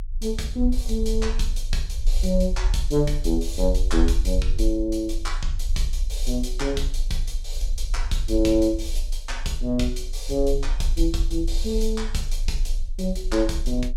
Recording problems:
low-frequency rumble; below 44 Hz, strongest tone 26 Hz, SNR 2 dB

